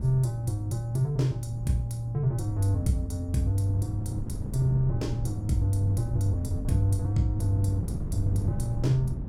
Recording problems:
hum; 50 Hz, harmonics up to 300 Hz, SNR 23 dB
wind on the microphone; below 160 Hz, SNR 8 dB

